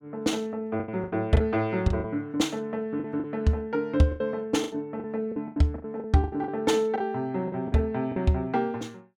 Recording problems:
lost packets; 12% of the sound replaced, filled with the last packet

